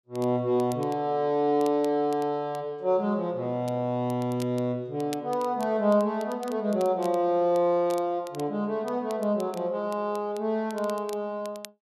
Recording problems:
crackling; vinyl, SNR 23 dB

